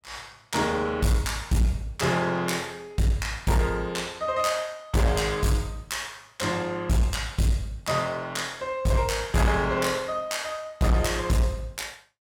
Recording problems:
distorted audio; hard clipping, uneven, signal-to-distortion ratio 10 dB

